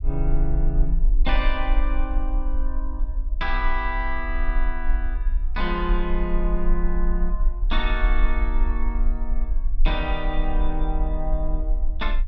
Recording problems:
rumble; below 40 Hz, strongest tone 22 Hz, SNR -3 dB

